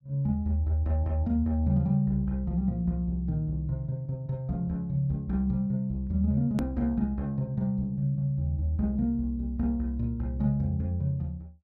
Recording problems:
hard cut with a click; at 6.5 s

